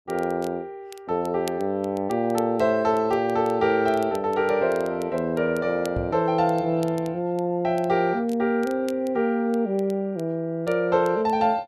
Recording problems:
crackle; vinyl, SNR 25 dB
microphone thump; at 6 s; peak -3 dB vs average level

